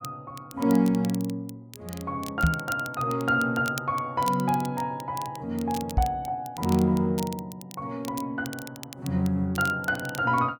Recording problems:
crackling; vinyl, SNR 16 dB
microphone thump; at 2.5 s and at 6 s; peak +8 dB vs average level

